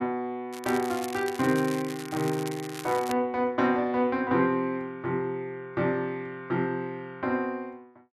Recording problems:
crackle; from 0.5 to 3 s; loose cable, SNR 13 dB

